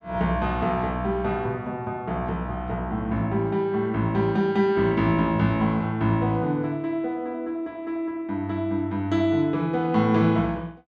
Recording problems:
none

